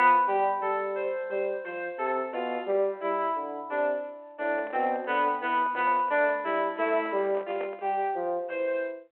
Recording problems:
telephone audio; 320 Hz to 3.2 kHz, G.726
microphone handling noise; from 4.5 to 8 s; peak -7 dB vs average level

